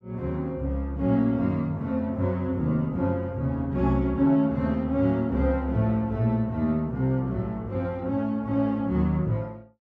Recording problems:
none

